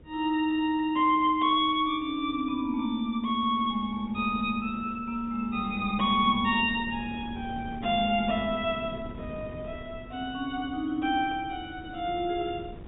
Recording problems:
treble cut off; nothing above 4 kHz
wind noise; below 360 Hz, SNR 17 dB

